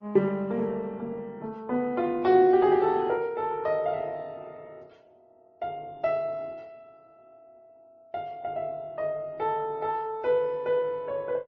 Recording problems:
lossy compression; MP3, then Opus, log-spectral distance 2 dB

